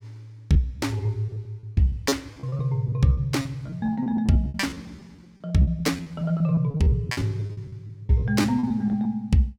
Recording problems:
lost packets; 17% of the sound replaced, filled with repeated pitch periods

